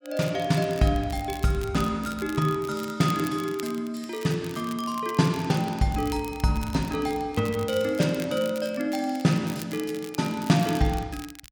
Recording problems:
crackle; vinyl, SNR 17 dB

